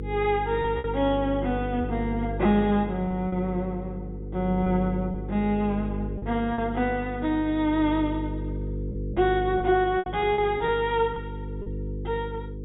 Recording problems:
low-pass filter; nothing above 4 kHz
hum; 50 Hz, harmonics up to 500 Hz, SNR 8 dB
packet loss; 4% of the sound replaced, filled with repeated pitch periods

